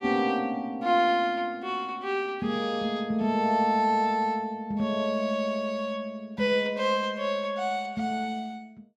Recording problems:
none

